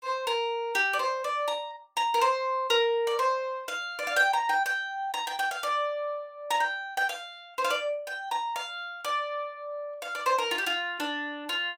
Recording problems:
none

